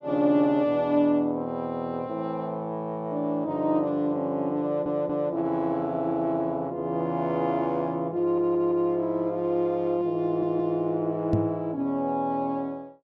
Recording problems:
audio stuttering; at 4.5 s, at 8 s and at 10 s
knock on the microphone; at 11 s; peak +4 dB vs average level

